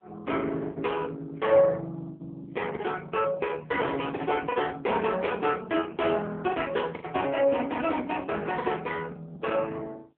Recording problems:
telephone audio; 280 Hz to 3.3 kHz, AMR-NB
lost packets; 6% of the sound replaced, filled with the last packet

